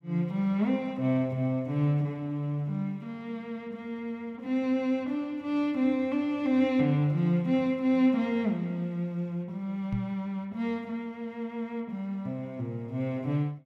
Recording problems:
microphone thump; at 10 s; peak -1 dB vs average level

